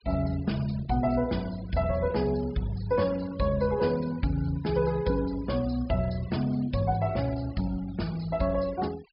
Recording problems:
treble cut off; nothing above 5.5 kHz
denoising artefacts; signal-to-artefact ratio 20 dB

